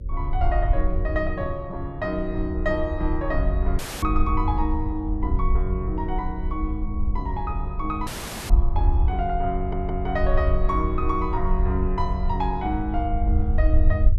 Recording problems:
hum; 50 Hz, harmonics up to 550 Hz, SNR 18 dB
rumble; below 66 Hz, SNR -1 dB
audio cutting out; at 4 s and at 8 s
audio stuttering; at 9.5 s

